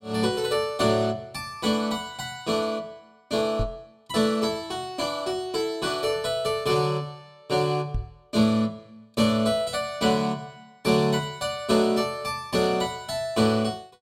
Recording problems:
knock on the microphone; at 3.5 s and at 8 s; peak 0 dB vs average level

